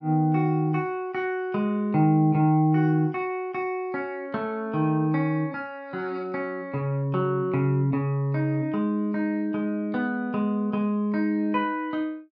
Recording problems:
none

